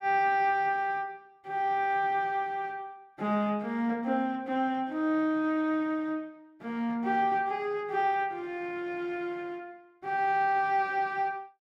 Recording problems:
none

